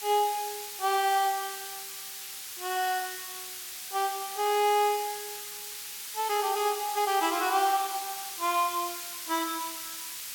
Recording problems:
hiss; slope +4 dB per octave, SNR 7 dB

